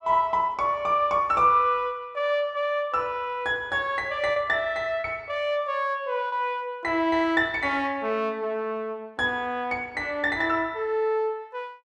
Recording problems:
packet loss; 1.4% of the sound replaced, filled with repeated pitch periods

